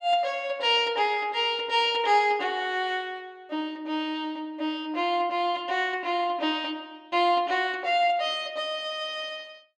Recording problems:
none

